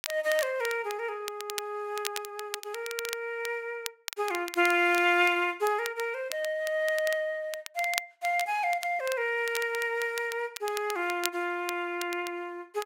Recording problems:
crackling; vinyl, SNR 11 dB

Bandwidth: 16 kHz